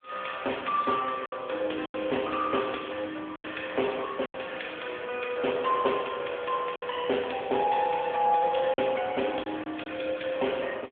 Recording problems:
telephone audio; 320 Hz to 3.4 kHz, AMR-NB
lost packets; 4% of the sound replaced, filled with silence

